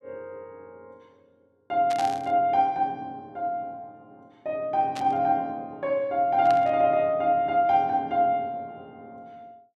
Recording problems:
static burst; at 2 s, at 5 s and at 6.5 s; peak -8 dB vs average level

